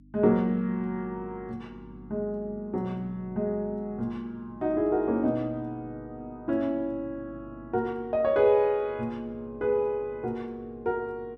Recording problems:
hum; 50 Hz, harmonics up to 300 Hz, SNR 22 dB

